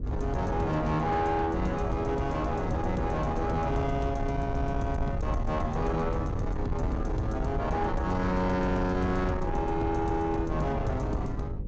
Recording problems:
low-pass filter; nothing above 8 kHz
distorted audio; soft clipping, signal-to-distortion ratio 11 dB
hum; 50 Hz, harmonics up to 550 Hz, SNR 13 dB
rumble; below 100 Hz, SNR 7 dB

